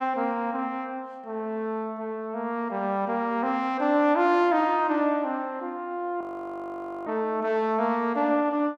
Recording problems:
audio freezing; at 6 s for 1 s

